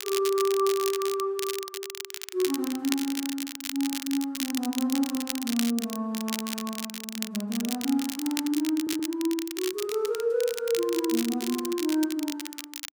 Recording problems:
crackle; vinyl, SNR 6 dB
stutter; at 9 s

